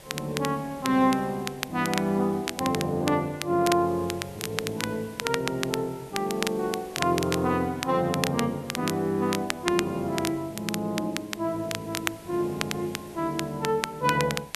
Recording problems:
hiss; SNR 20 dB
crackling; vinyl, SNR 7 dB

